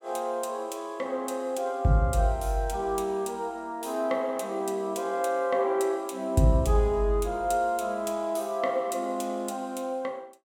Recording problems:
none

